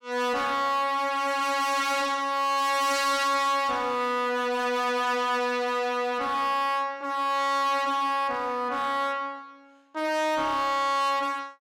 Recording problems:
distortion; hard clipping, signal-to-distortion ratio 7 dB

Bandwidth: 16.5 kHz